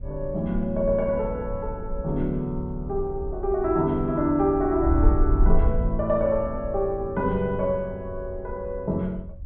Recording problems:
treble cut off; nothing above 4 kHz
wind on the microphone; below 62 Hz, SNR 6 dB

